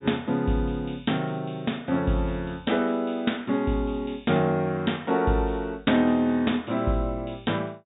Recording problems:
treble cut off; nothing above 4 kHz

